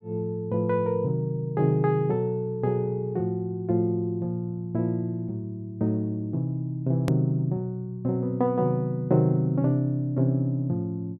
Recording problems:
click at an edit; at 7 s

